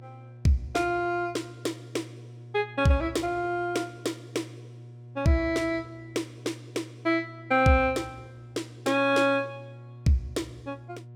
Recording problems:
hum; 60 Hz, harmonics up to 720 Hz, SNR 18 dB

